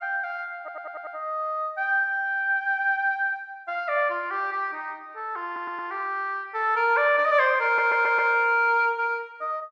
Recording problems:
audio stuttering; at 0.5 s, at 5.5 s and at 7.5 s

